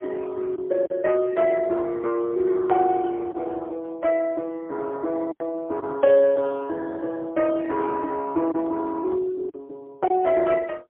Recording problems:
telephone audio; 280 Hz to 3.4 kHz, AMR-NB, then MP3
packet loss; 2% of the sound replaced, filled with silence

